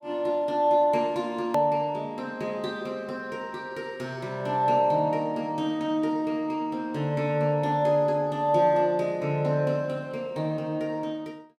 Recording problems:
hard cut with a click; at 1.5 s

